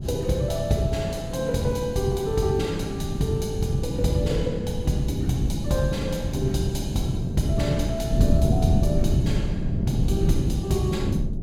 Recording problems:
wind on the microphone; below 190 Hz, SNR 2 dB

